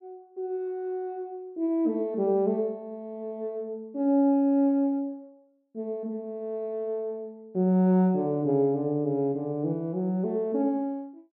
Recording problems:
none

